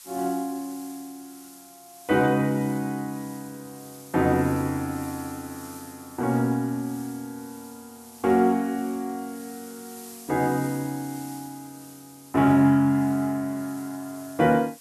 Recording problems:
hiss; SNR 20 dB

